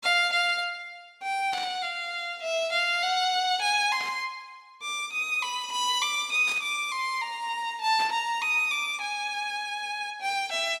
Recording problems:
burst of static; 4 times, first at 1.5 s; peak -8 dB vs average level

